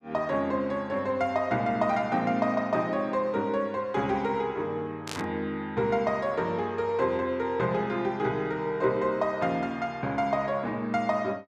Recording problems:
static burst; at 5 s; peak -3 dB vs average level

